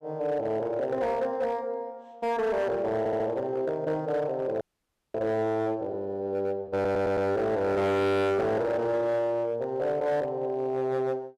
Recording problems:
distorted audio; hard clipping, signal-to-distortion ratio 8 dB
stutter; at 3 s and at 6.5 s
audio freezing; at 4.5 s for 0.5 s

